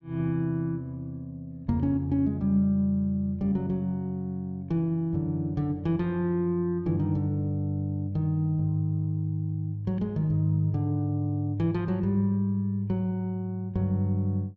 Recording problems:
treble cut off; nothing above 8 kHz

